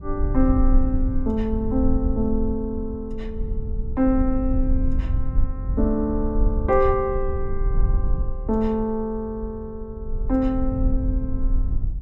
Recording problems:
rumble; below 60 Hz, SNR 2 dB

